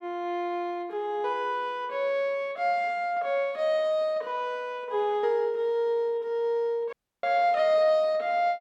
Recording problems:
dropout; at 7 s

